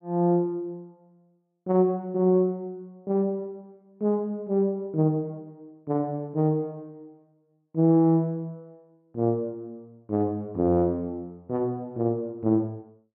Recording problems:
none

